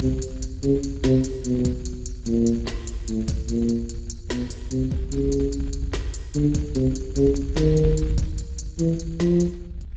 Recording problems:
codec artefacts; Speex, log-spectral distance 2 dB, nothing above 7.3 kHz
low-frequency rumble; below 82 Hz, SNR 9 dB

